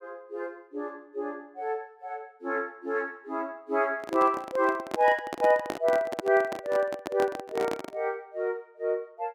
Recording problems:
handling noise; from 4 to 8 s; peak +2 dB vs average level

